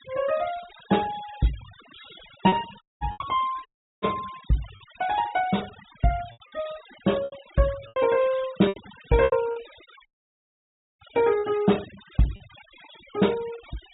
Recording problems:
treble cut off; nothing above 4 kHz
noise reduction artefacts; signal-to-artefact ratio 18 dB
lost packets; 5% of the sound replaced, filled with repeated pitch periods
dropout; at 3 s, at 3.5 s and at 10 s for 1 s

